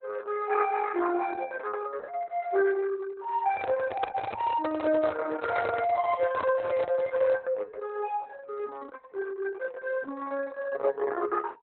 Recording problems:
codec artefacts; Opus, log-spectral distance 3 dB, nothing above 3.9 kHz
handling noise; from 3.5 to 7.5 s; peak +6 dB vs average level

